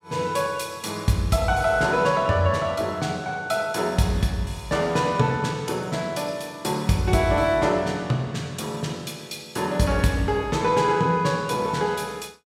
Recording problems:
none

